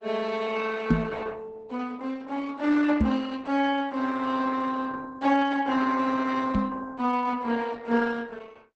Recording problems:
lossy compression; Opus, log-spectral distance 4 dB, nothing above 8 kHz
knock on the microphone; at 1 s, at 3 s and at 6.5 s; peak +10 dB vs average level

